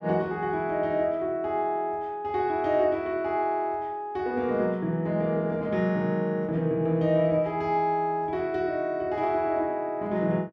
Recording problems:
none

